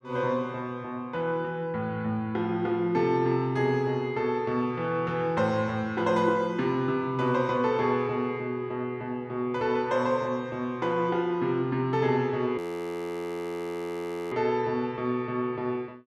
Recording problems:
frozen audio; at 13 s for 1.5 s

